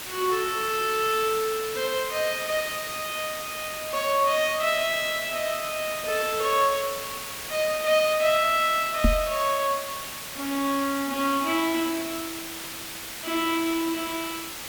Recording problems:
hiss; slope 0 dB per octave, SNR 8 dB
microphone thump; at 9 s; peak +7 dB vs average level

